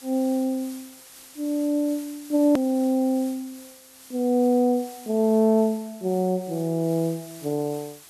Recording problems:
background hiss; slope 0 dB per octave, SNR 20 dB
hard cut with a click; at 2.5 s

